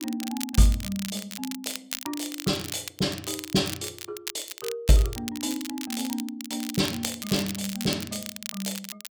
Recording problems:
crackling; vinyl, SNR 7 dB

